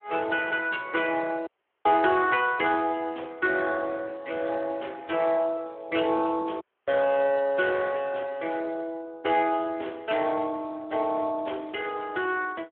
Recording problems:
telephone audio; 300 Hz to 3.3 kHz, Speex
audio cutting out; at 1.5 s and at 6.5 s

